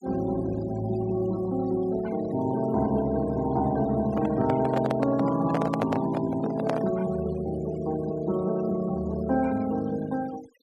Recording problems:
noise reduction artefacts; signal-to-artefact ratio 20 dB
handling noise; from 4 to 7 s; peak +2 dB vs average level

